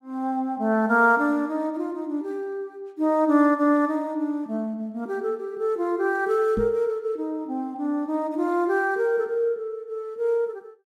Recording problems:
microphone thump; at 6.5 s; peak 0 dB vs average level

